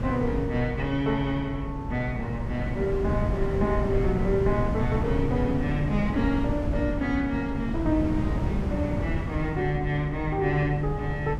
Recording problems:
electrical hum; 50 Hz, harmonics up to 450 Hz, SNR 11 dB
wind noise; below 210 Hz, SNR 4 dB

